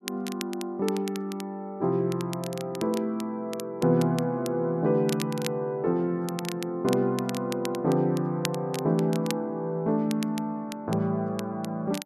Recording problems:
crackle; vinyl, SNR 14 dB

